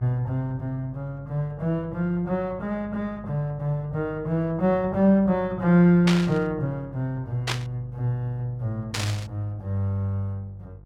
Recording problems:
electrical hum; 50 Hz, harmonics up to 700 Hz, SNR 20 dB
burst of static; at 6 s, at 7.5 s and at 9 s; peak +2 dB vs average level

